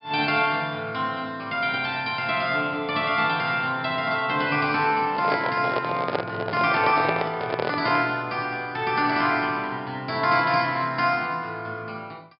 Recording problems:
low-pass filter; nothing above 5.5 kHz
handling noise; from 5 to 8 s; peak +2 dB vs average level

